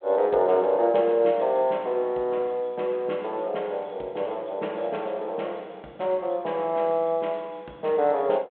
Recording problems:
telephone audio; 260 Hz to 3.3 kHz, G.726

